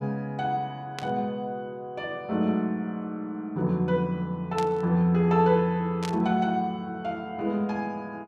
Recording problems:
static burst; at 1 s, at 4.5 s and at 6 s; peak -5 dB vs average level

